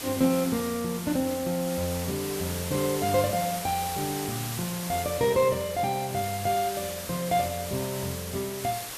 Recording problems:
hiss; slope -1 dB per octave, SNR 7 dB

